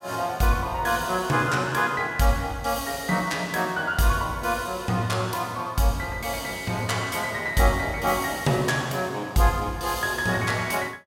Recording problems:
none

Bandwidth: 16.5 kHz